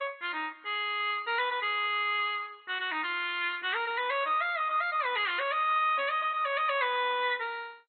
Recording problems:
codec artefacts; MP2, log-spectral distance 4 dB, nothing above 3.5 kHz

